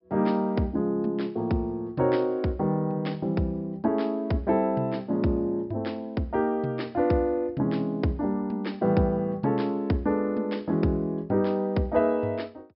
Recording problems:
treble cut off; nothing above 5.3 kHz

